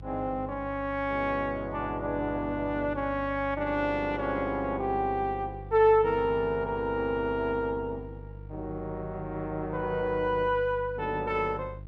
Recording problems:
hum; 50 Hz, harmonics up to 500 Hz, SNR 14 dB

